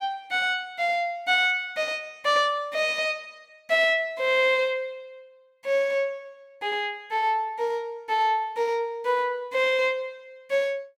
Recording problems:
none

